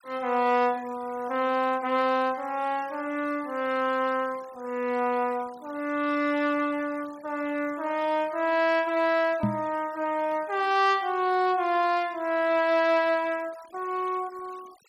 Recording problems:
noise reduction artefacts; signal-to-artefact ratio 23 dB
microphone bump; at 9.5 s; peak +3 dB vs average level

